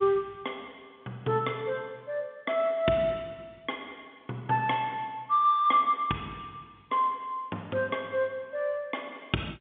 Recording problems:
telephone audio; 170 Hz to 3.6 kHz, G.711

